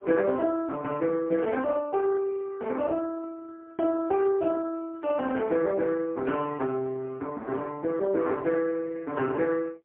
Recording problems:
phone line; 240 Hz to 2.7 kHz, AMR-NB, then MP3

